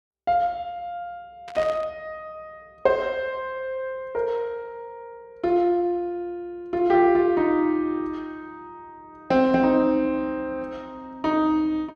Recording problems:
burst of static; at 1.5 s; peak -9 dB vs average level

